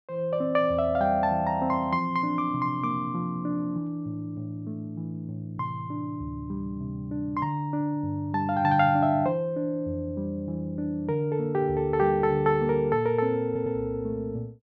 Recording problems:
audio stuttering; at 13 s

